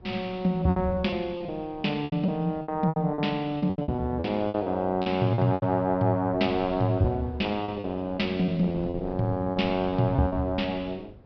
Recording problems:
treble missing; nothing above 5.5 kHz
wind noise; below 280 Hz, SNR 20 dB
lost packets; 11% of the sound replaced, filled with repeated pitch periods

